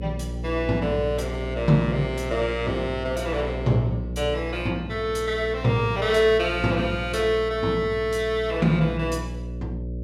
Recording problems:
mains hum; 60 Hz, harmonics up to 600 Hz, SNR 9 dB

